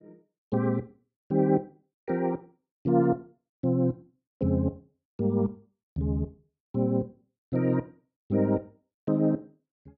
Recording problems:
none

